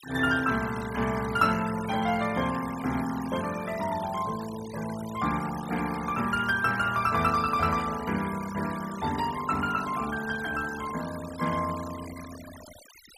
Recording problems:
denoising artefacts; signal-to-artefact ratio 14 dB

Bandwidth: 15 kHz